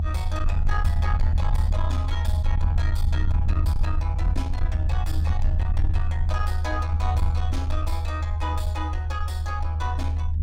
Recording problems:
distortion; soft clipping, signal-to-distortion ratio 10 dB
rumble; below 80 Hz, SNR -8 dB

